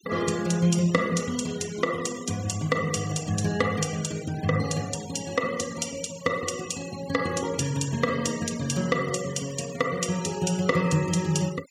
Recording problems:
denoising artefacts; signal-to-artefact ratio 15 dB

